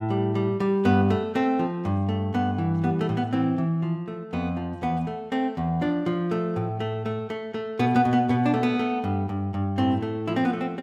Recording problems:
none

